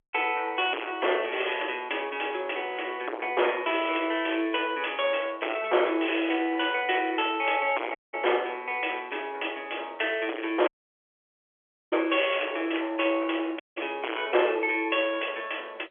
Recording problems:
phone line; 280 Hz to 3.4 kHz, G.711
distorted audio; hard clipping, uneven, signal-to-distortion ratio 5 dB
audio cutting out; at 8 s, at 11 s for 1 s and at 14 s

